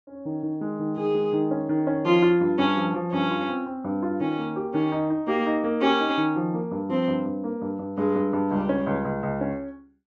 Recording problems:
treble missing; nothing above 7.7 kHz

